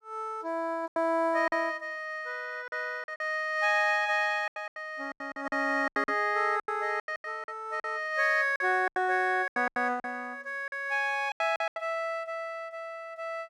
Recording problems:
packet loss; 12% of the sound replaced, filled with silence

